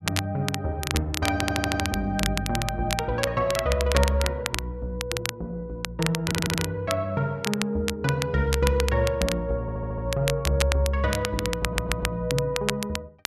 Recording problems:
crackling; vinyl, SNR 5 dB
audio stuttering; 4 times, first at 1.5 s

